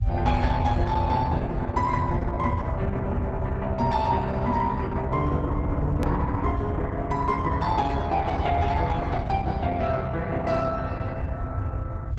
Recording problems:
lossy compression; Opus, log-spectral distance 2 dB
rumble; below 100 Hz, SNR 3 dB
hard cut with a click; at 6 s

